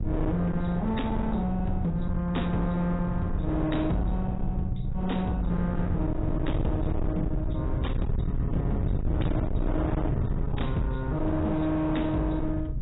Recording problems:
codec artefacts; AAC, log-spectral distance 2 dB, nothing above 3.8 kHz
distortion; hard clipping, signal-to-distortion ratio 6 dB
rumble; below 150 Hz, SNR 2 dB

